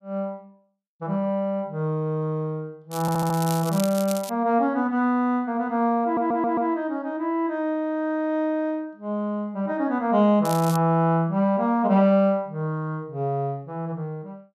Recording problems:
crackling; from 3 to 4.5 s and at 10 s; loose cable, SNR 13 dB
stutter; at 3 s and at 6 s

